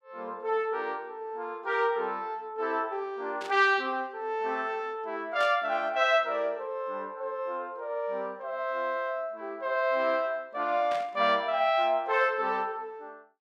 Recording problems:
burst of static; at 3.5 s, at 5.5 s and at 11 s; peak -7 dB vs average level

